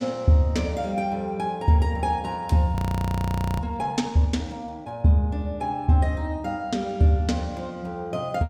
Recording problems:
audio freezing; at 3 s for 1 s

